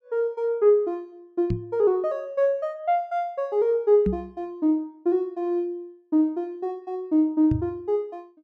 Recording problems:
microphone bump; at 1.5 s, at 4 s and at 7.5 s; peak +2 dB vs average level

